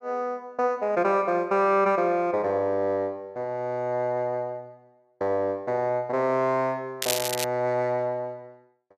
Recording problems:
crackling; at 7 s; loose cable, SNR 3 dB

